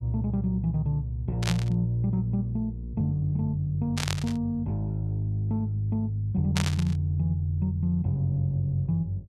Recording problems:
static burst; at 1.5 s, at 4 s and at 6.5 s; peak +2 dB vs average level

